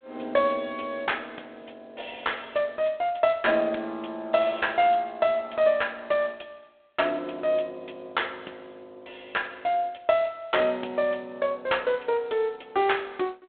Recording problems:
telephone audio; 260 Hz to 3.6 kHz, G.726

